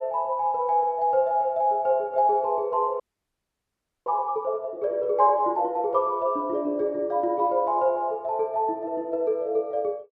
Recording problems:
audio freezing; at 3 s for 1 s

